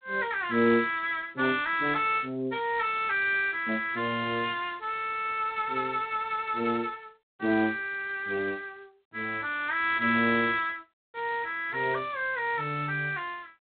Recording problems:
telephone audio; 170 Hz to 3.9 kHz, G.726

